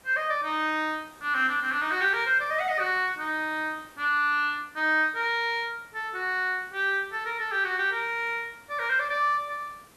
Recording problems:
background hiss; slope -4 dB per octave, SNR 27 dB

